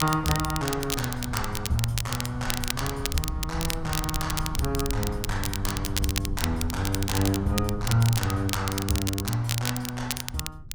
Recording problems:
low-frequency rumble; below 110 Hz, SNR 8 dB
crackle; vinyl, SNR 4 dB

